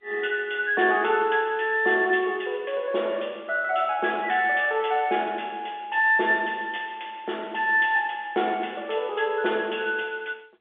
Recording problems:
telephone audio; 280 Hz to 3.5 kHz, G.711

